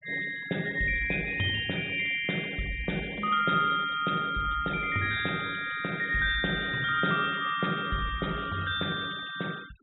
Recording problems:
treble missing; nothing above 3.8 kHz
noise reduction artefacts; signal-to-artefact ratio 20 dB

